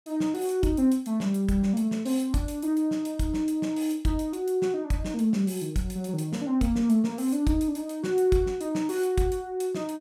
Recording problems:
none

